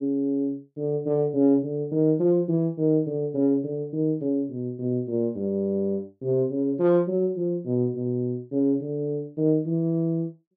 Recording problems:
none

